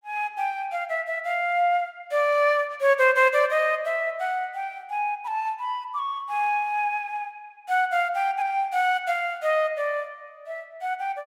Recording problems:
none

